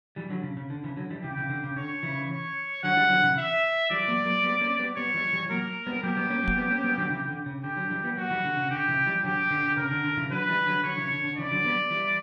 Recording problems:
microphone bump; at 6.5 s; peak -4 dB vs average level

